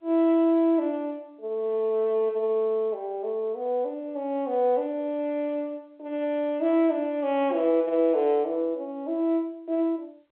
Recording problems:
telephone audio; 280 Hz to 3.5 kHz, G.711

